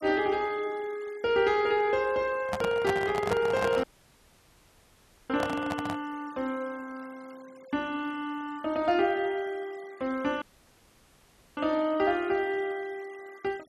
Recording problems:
noise reduction artefacts; signal-to-artefact ratio 23 dB
microphone handling noise; from 2.5 to 6 s; peak +1 dB vs average level
dropout; at 4 s for 1.5 s and at 10 s for 1 s

